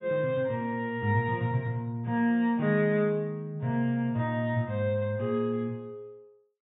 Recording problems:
treble cut off; nothing above 4 kHz

